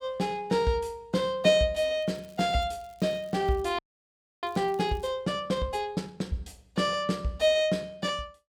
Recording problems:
crackling; from 2 to 5 s; loose cable, SNR 30 dB
audio freezing; at 4 s for 0.5 s

